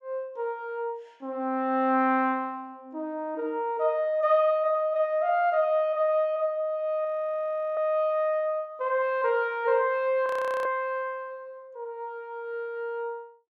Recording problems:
audio freezing; at 7 s for 0.5 s and at 10 s

